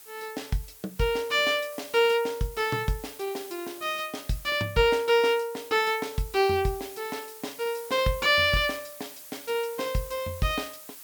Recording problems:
hiss; slope +1 dB per octave, SNR 17 dB

